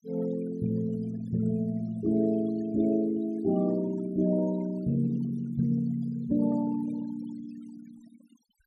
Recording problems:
denoising artefacts; signal-to-artefact ratio 21 dB

